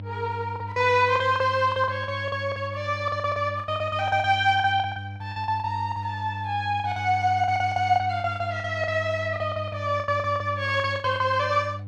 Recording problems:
electrical hum; 50 Hz, harmonics up to 500 Hz, SNR 11 dB
packet loss; 16% of the sound replaced, filled with the last packet

